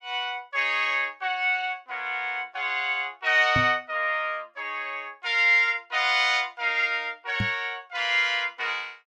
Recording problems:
knock on the microphone; at 3.5 s and at 7.5 s; peak -1 dB vs average level

